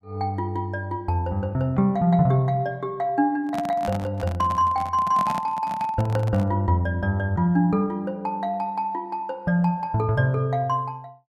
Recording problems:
microphone handling noise; from 3.5 to 6.5 s; peak -3 dB vs average level

